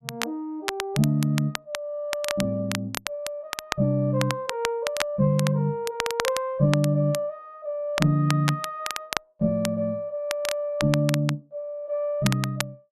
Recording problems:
crackle; vinyl, SNR 7 dB

